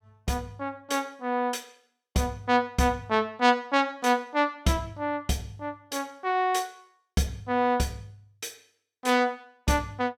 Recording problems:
none

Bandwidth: 17 kHz